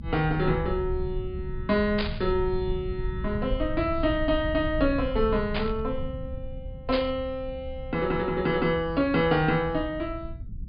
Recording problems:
treble missing; nothing above 5 kHz
rumble; below 98 Hz, SNR 9 dB
static burst; at 2 s, at 5.5 s and at 7 s; peak 0 dB vs average level

